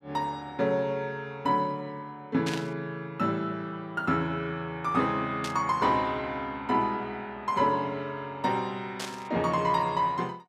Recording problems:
static burst; at 2.5 s, at 5.5 s and at 9 s; peak -1 dB vs average level

